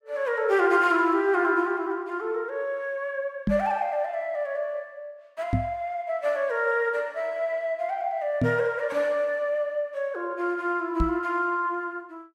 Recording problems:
microphone thump; 4 times, first at 3.5 s; peak +5 dB vs average level

